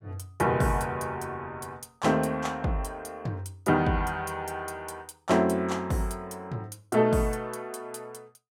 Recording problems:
none

